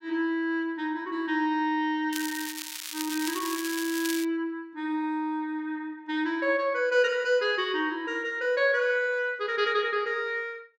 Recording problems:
crackling; from 2 to 4.5 s; loose cable, SNR 7 dB

